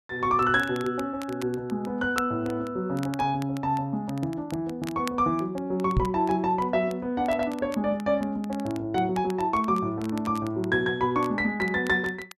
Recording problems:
crackle; vinyl, SNR 20 dB
microphone bump; at 6 s; peak +6 dB vs average level

